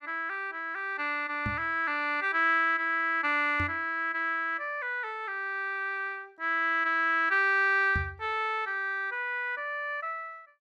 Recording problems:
microphone bump; at 1.5 s, at 3.5 s and at 8 s; peak -1 dB vs average level

